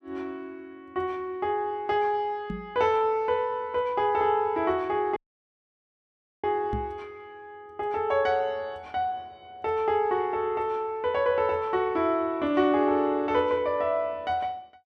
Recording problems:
microphone bump; at 2.5 s and at 6.5 s; peak -2 dB vs average level
audio cutting out; at 5 s for 1.5 s

